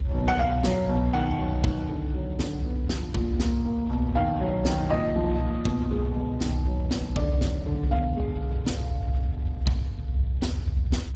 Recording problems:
codec artefacts; Speex, log-spectral distance 2 dB, nothing above 7.8 kHz
rumble; below 90 Hz, strongest tone 64 Hz, SNR 3 dB

